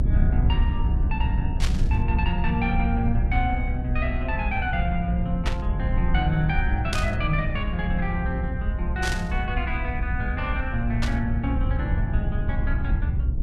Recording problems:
low-frequency rumble; below 88 Hz, SNR -2 dB
burst of static; 5 times, first at 1.5 s; peak +3 dB vs average level

